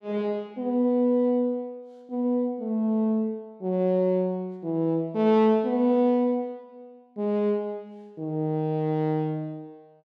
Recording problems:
none

